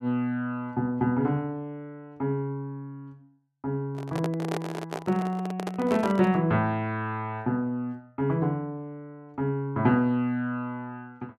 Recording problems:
handling noise; from 4 to 6.5 s; peak -1 dB vs average level

